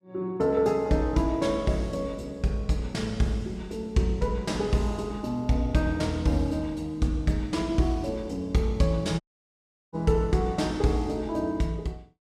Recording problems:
audio cutting out; at 9 s for 0.5 s

